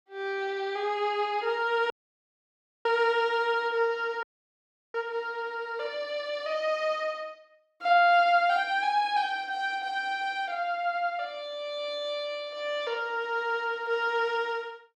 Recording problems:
audio cutting out; at 2 s for 1 s and at 4 s for 0.5 s

